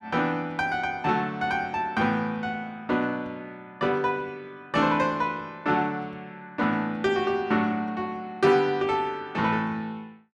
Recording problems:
none

